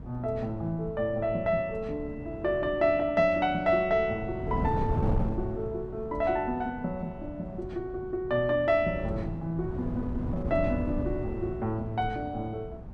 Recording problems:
wind on the microphone; below 230 Hz, SNR 8 dB

